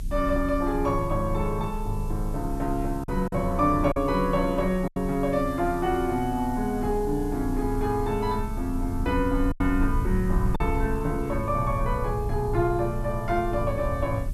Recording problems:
background hiss; SNR 24 dB
low-frequency rumble; below 68 Hz, strongest tone 30 Hz, SNR 8 dB
packet loss; 2% of the sound replaced, filled with silence

